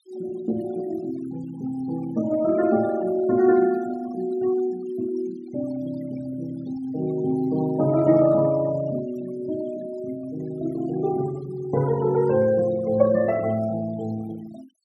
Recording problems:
noise reduction artefacts; signal-to-artefact ratio 19 dB

